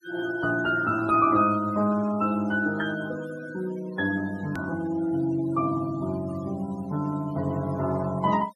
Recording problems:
noise reduction artefacts; signal-to-artefact ratio 19 dB
hard cut with a click; at 4.5 s

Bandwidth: 13 kHz